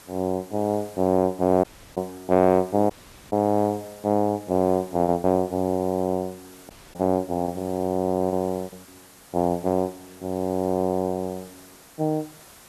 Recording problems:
background hiss; slope -2 dB per octave, SNR 23 dB
packet loss; 3% of the sound replaced, filled with repeated pitch periods
audio cutting out; at 1.5 s, at 3 s and at 6.5 s

